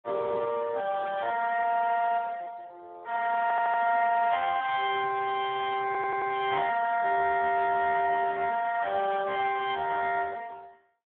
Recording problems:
phone line; 340 Hz to 2.8 kHz, Speex
audio stuttering; at 3.5 s and at 6 s

